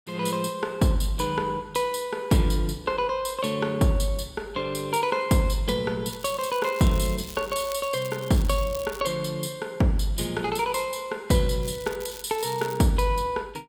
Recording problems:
crackle; from 6 to 9 s and from 12 to 13 s; loose cable, SNR 16 dB

